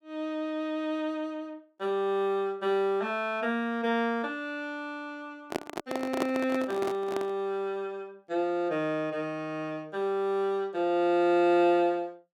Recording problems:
microphone handling noise; from 5.5 to 7.5 s; peak +3 dB vs average level

